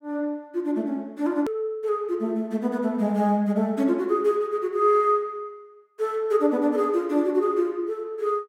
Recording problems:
edit click; at 1.5 s

